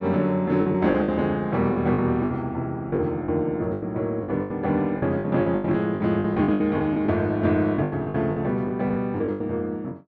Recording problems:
packet loss; 13% of the sound replaced, filled with the last packet

